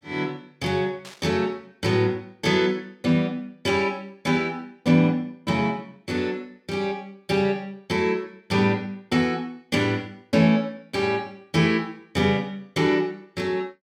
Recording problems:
burst of static; at 1 s; peak -13 dB vs average level

